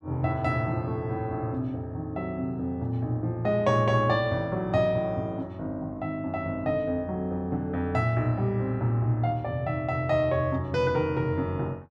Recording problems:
none

